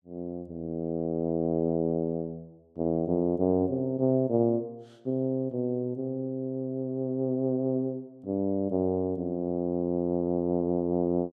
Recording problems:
none

